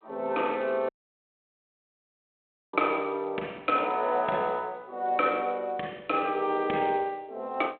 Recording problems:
telephone audio; 260 Hz to 3.6 kHz, G.726
dropout; at 1 s for 2 s

